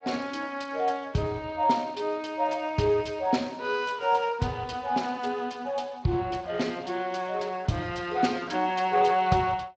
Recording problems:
lossy codec; Speex, log-spectral distance 4 dB, nothing above 7.3 kHz

